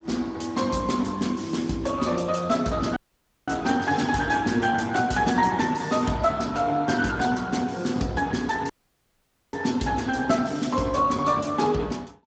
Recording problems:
lossy codec; Speex, log-spectral distance 5 dB, nothing above 7.6 kHz
dropout; at 3 s for 0.5 s and at 8.5 s for 1 s

